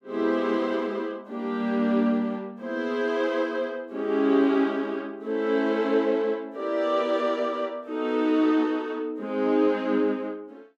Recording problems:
none

